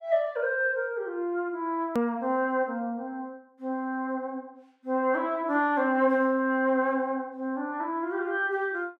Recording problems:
hard cut with a click; at 2 s

